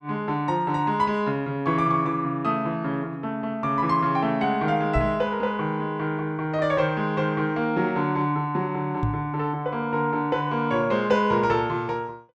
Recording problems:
microphone bump; at 5 s and at 9 s; peak +2 dB vs average level

